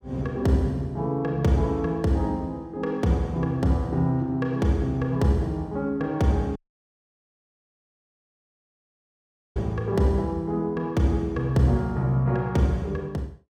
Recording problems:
audio cutting out; at 6.5 s for 3 s

